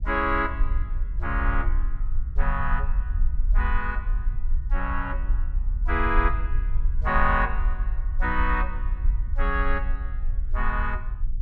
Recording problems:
low-frequency rumble; below 48 Hz, strongest tone 22 Hz, SNR 0 dB

